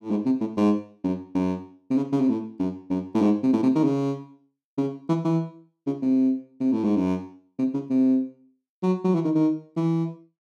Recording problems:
none

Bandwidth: 13.5 kHz